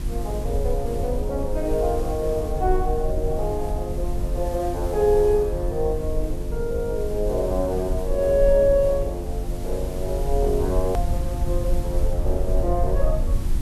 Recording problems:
hum; 50 Hz, harmonics up to 350 Hz, SNR 12 dB
background hiss; slope -2 dB per octave, SNR 19 dB
low-frequency rumble; below 62 Hz, SNR 4 dB
edit click; at 11 s

